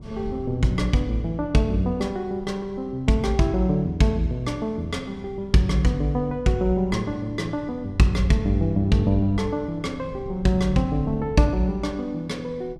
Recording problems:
wind on the microphone; below 150 Hz, SNR 17 dB

